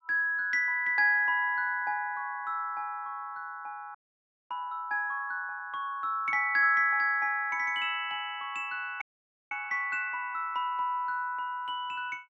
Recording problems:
frozen audio; at 4 s for 0.5 s and at 9 s

